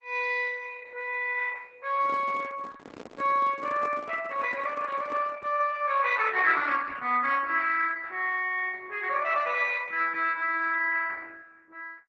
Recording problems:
lossy codec; Opus, log-spectral distance 4 dB
microphone handling noise; from 2 to 5.5 s; peak -10 dB vs average level

